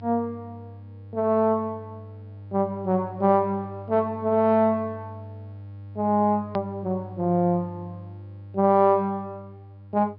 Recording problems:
low-pass filter; nothing above 5.5 kHz
hum; 50 Hz, harmonics up to 600 Hz, SNR 17 dB
hard cut with a click; at 6.5 s

